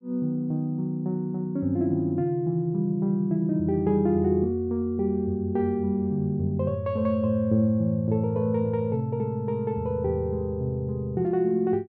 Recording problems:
none

